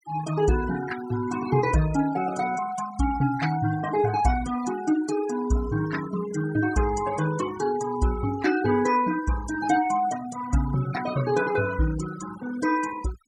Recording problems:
denoising artefacts; signal-to-artefact ratio 14 dB

